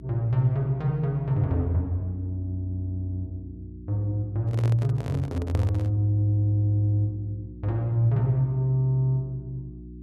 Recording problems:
electrical hum; 60 Hz, harmonics up to 360 Hz, SNR 17 dB
handling noise; from 4.5 to 6 s; peak -7 dB vs average level

